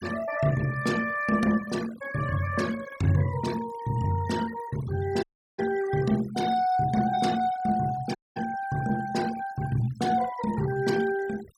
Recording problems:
denoising artefacts; signal-to-artefact ratio 16 dB
audio cutting out; at 5 s and at 8 s

